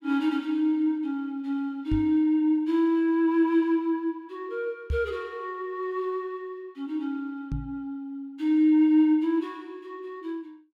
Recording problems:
knock on the microphone; at 2 s, at 5 s and at 7.5 s; peak 0 dB vs average level

